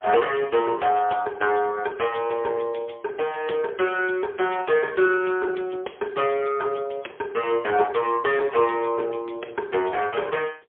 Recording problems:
phone line; 300 Hz to 3.5 kHz, AMR-NB, then MP3

